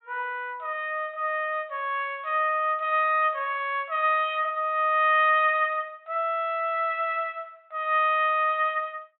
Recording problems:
low-pass filter; nothing above 4 kHz

